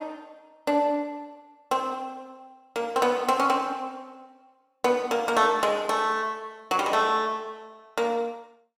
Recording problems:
none

